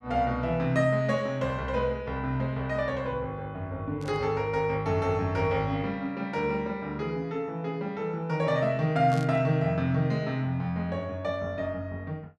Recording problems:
burst of static; at 4 s and at 9 s; peak -12 dB vs average level

